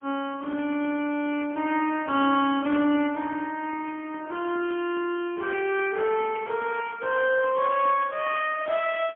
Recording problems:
telephone audio; 240 Hz to 3.2 kHz, AMR-NB, then MP3

